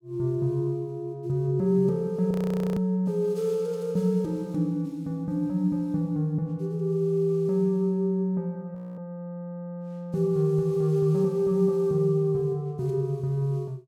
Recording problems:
audio freezing; at 2.5 s and at 9 s

